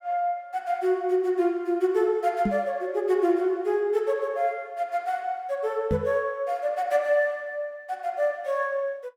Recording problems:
microphone thump; at 2.5 s and at 6 s; peak +3 dB vs average level

